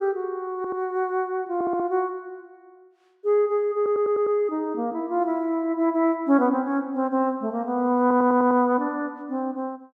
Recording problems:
audio stuttering; 4 times, first at 0.5 s

